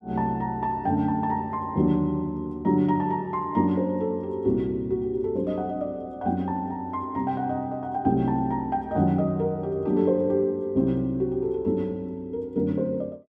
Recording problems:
none

